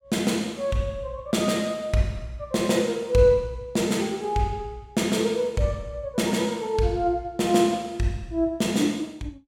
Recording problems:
none

